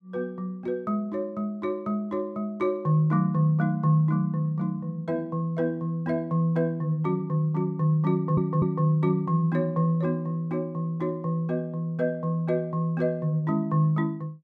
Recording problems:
audio stuttering; at 8 s

